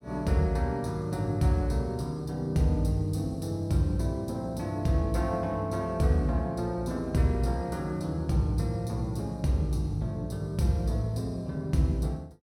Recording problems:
none

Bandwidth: 16.5 kHz